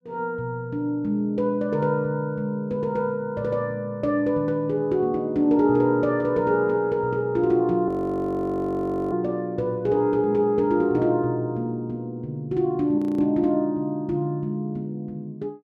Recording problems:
frozen audio; at 8 s for 1 s and at 13 s

